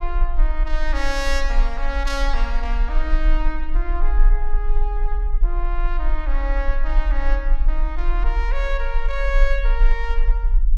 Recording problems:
low-frequency rumble; below 38 Hz, strongest tone 26 Hz, SNR -5 dB

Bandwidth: 16 kHz